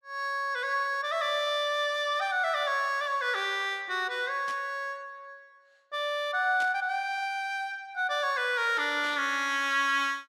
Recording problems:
static burst; at 4.5 s, at 6.5 s and at 9 s; peak -10 dB vs average level

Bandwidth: 14 kHz